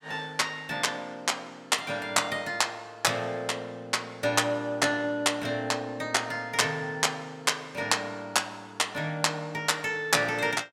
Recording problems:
none

